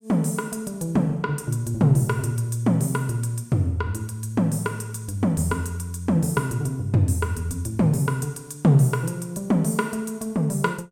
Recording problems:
none

